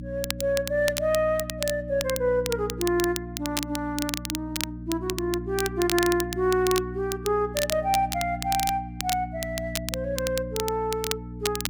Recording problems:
hum; 60 Hz, harmonics up to 300 Hz, SNR 10 dB
crackling; vinyl, SNR 6 dB

